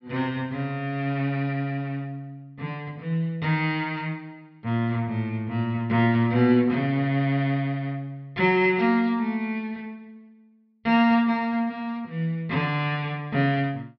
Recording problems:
low-pass filter; nothing above 5.5 kHz

